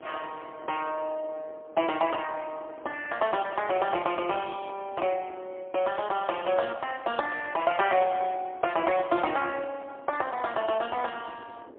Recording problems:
telephone audio; 260 Hz to 3.5 kHz, AMR-NB, then MP3
wind on the microphone; below 550 Hz, SNR 21 dB

